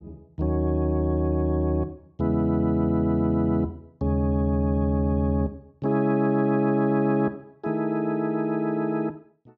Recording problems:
none

